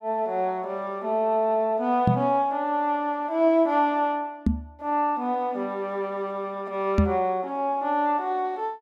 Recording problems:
knock on the microphone; at 2 s, at 4.5 s and at 7 s; peak +8 dB vs average level

